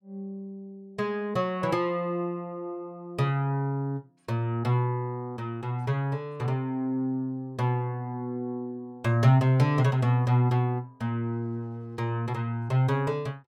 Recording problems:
none

